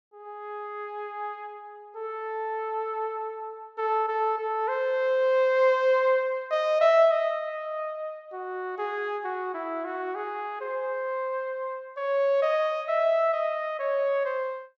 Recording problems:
treble cut off; nothing above 8 kHz

